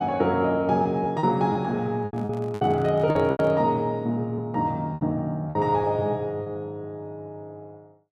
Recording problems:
lost packets; 7% of the sound replaced, filled with repeated pitch periods
microphone handling noise; from 2 to 3.5 s; peak -11 dB vs average level

